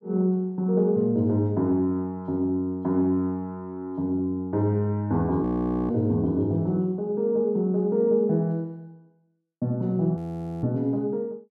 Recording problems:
audio freezing; at 5.5 s and at 10 s

